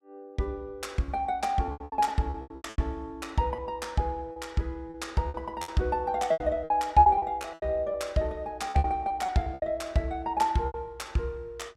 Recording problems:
packet loss; 12% of the sound replaced, filled with repeated pitch periods

